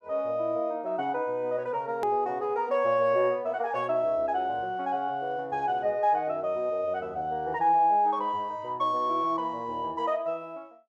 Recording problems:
hard cut with a click; at 2 s

